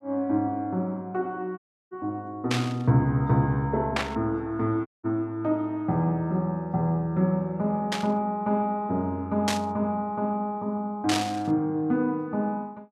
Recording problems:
audio cutting out; at 1.5 s and at 5 s
static burst; 5 times, first at 2.5 s; peak +3 dB vs average level

